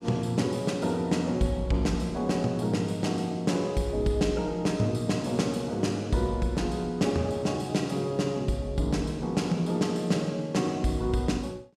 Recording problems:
none

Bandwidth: 14.5 kHz